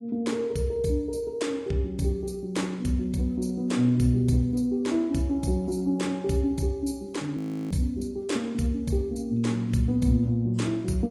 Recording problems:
lossy compression; AAC, log-spectral distance 2 dB, nothing above 11.3 kHz
frozen audio; at 7.5 s

